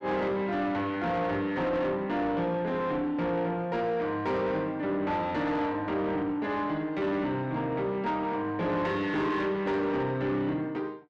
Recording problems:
distorted audio; soft clipping, signal-to-distortion ratio 11 dB

